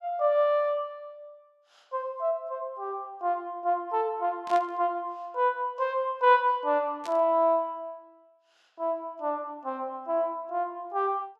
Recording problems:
burst of static; at 4.5 s and at 7 s; peak -11 dB vs average level

